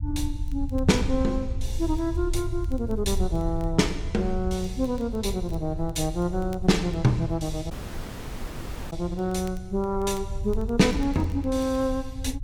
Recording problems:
rumble; below 76 Hz, SNR 7 dB
crackle; vinyl, SNR 30 dB
audio cutting out; at 7.5 s for 1 s

